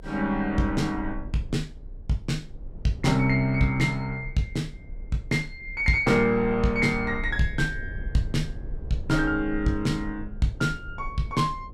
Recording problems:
low-frequency rumble; below 62 Hz, SNR 13 dB

